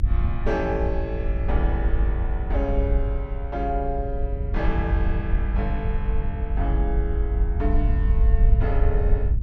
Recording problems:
low-frequency rumble; below 64 Hz, SNR -5 dB

